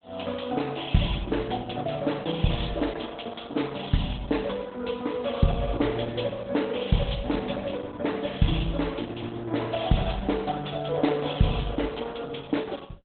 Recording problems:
lossy compression; Opus, log-spectral distance 7 dB, nothing above 3.7 kHz

